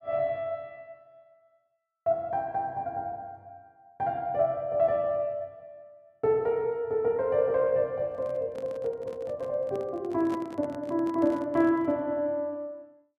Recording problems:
handling noise; from 8 to 12 s; peak -7 dB vs average level

